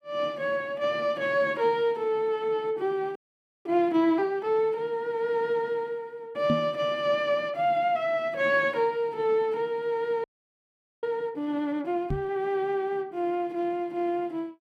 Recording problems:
audio freezing; at 3 s and at 10 s for 1 s
microphone bump; at 6.5 s and at 12 s; peak +3 dB vs average level

